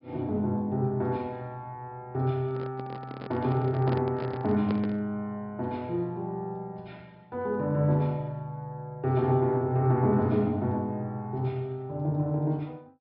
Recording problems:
treble missing; nothing above 5.2 kHz
microphone handling noise; from 2.5 to 5 s; peak -1 dB vs average level

